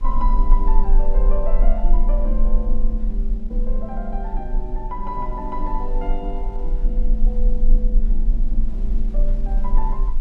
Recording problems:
hum; 50 Hz, harmonics up to 700 Hz, SNR 16 dB
rumble; below 32 Hz, strongest tone 22 Hz, SNR -7 dB
wind on the microphone; below 780 Hz, SNR 21 dB

